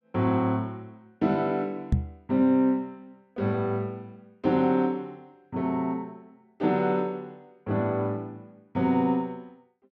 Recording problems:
microphone bump; at 2 s; peak +7 dB vs average level

